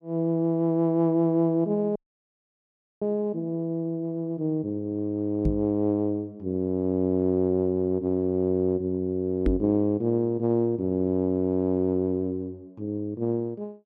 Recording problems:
frozen audio; at 2 s for 1 s
microphone thump; at 5.5 s and at 9.5 s; peak +5 dB vs average level

